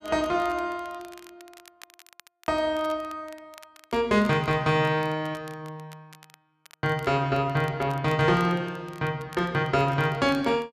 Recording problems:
crackling; vinyl, SNR 25 dB

